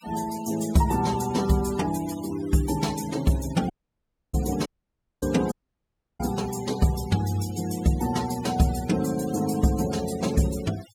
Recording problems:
noise reduction artefacts; signal-to-artefact ratio 17 dB
dropout; at 3.5 s for 0.5 s, at 4.5 s for 0.5 s and at 5.5 s for 0.5 s

